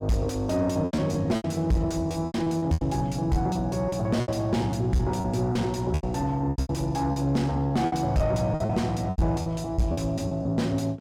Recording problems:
distorted audio; soft clipping, signal-to-distortion ratio 6 dB
packet loss; 13% of the sound replaced, filled with repeated pitch periods

